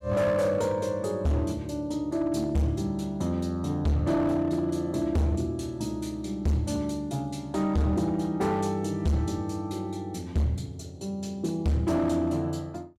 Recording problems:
distortion; hard clipping, signal-to-distortion ratio 7 dB

